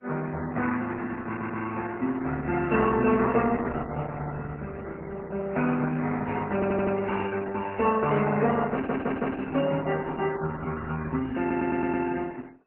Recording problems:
lossy compression; MP3, then Opus, log-spectral distance 4 dB, nothing above 2.7 kHz
stutter; 4 times, first at 1.5 s

